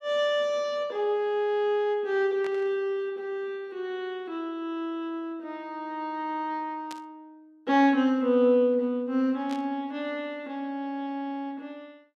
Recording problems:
static burst; at 2.5 s, at 7 s and at 9.5 s; peak -10 dB vs average level

